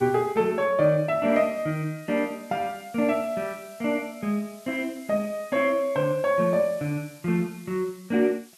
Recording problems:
background hiss; slope +4 dB per octave, SNR 24 dB

